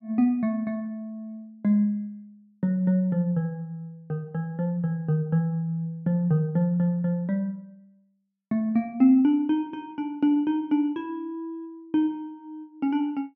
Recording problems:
none

